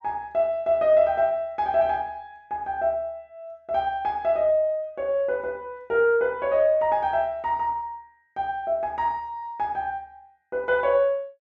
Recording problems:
none

